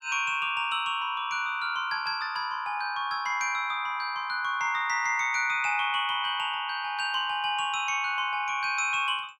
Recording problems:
none

